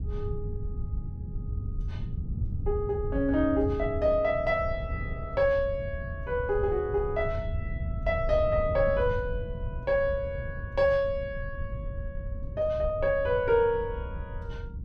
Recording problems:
rumble; below 110 Hz, SNR 8 dB

